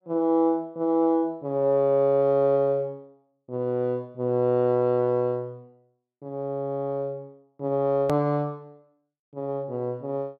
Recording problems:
edit click; at 8 s

